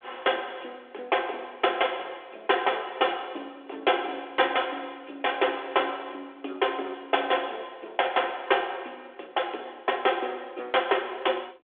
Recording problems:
phone line; 300 Hz to 3.5 kHz, G.726

